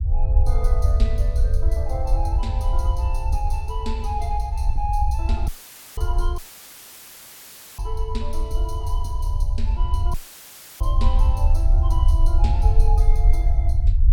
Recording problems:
low-frequency rumble; below 66 Hz, SNR -10 dB
audio cutting out; at 5.5 s, at 6.5 s for 1.5 s and at 10 s for 0.5 s; filled with static

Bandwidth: 17 kHz